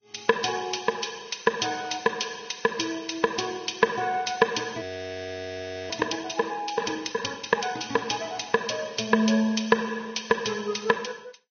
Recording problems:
lossy compression; MP2, then Vorbis, log-spectral distance 8 dB, nothing above 6.3 kHz
frozen audio; at 5 s for 1 s

